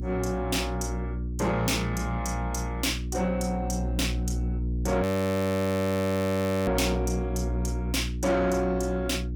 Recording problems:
distortion; soft clipping, signal-to-distortion ratio 11 dB
hum; 60 Hz, harmonics up to 480 Hz, SNR 3 dB
audio freezing; at 5 s for 1.5 s

